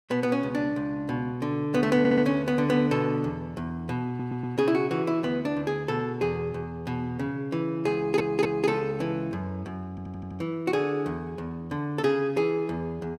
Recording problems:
audio stuttering; 4 times, first at 2 s

